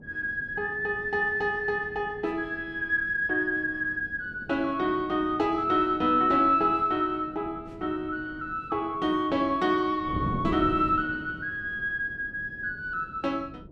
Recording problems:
wind on the microphone; below 310 Hz, SNR 15 dB

